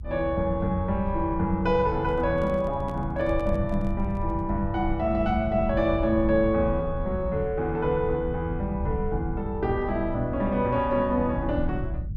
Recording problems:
rumble; below 98 Hz, SNR 8 dB
handling noise; from 2 to 4.5 s; peak -10 dB vs average level

